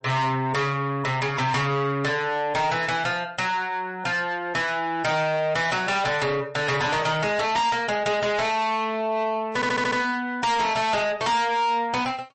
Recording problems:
lossy codec; MP3, log-spectral distance 3 dB, nothing above 8.2 kHz
distorted audio; soft clipping, signal-to-distortion ratio 7 dB
audio stuttering; at 9.5 s

